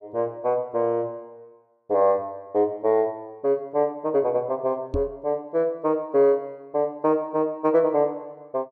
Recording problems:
microphone thump; at 5 s; peak -1 dB vs average level

